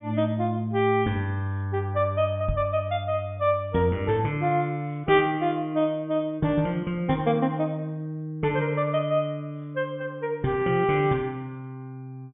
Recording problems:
low-pass filter; nothing above 3.5 kHz
microphone thump; at 2.5 s; peak +1 dB vs average level

